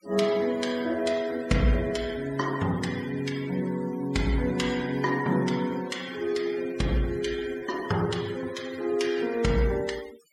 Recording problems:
noise reduction artefacts; signal-to-artefact ratio 16 dB

